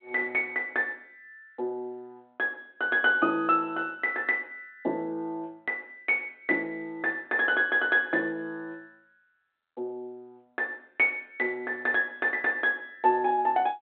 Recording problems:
telephone audio; 240 Hz to 3.3 kHz, G.726

